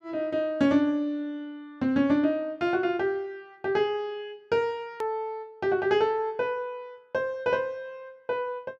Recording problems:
edit click; at 5 s

